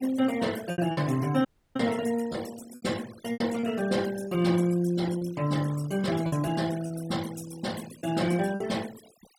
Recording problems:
noise reduction artefacts; signal-to-artefact ratio 17 dB
packet loss; 7% of the sound replaced, filled with repeated pitch periods
dropout; at 1.5 s

